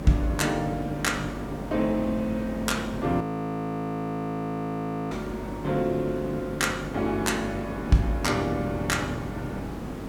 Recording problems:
mains hum; 50 Hz, harmonics up to 600 Hz, SNR 12 dB
hiss; slope -8 dB per octave, SNR 9 dB
audio freezing; at 3 s for 2 s

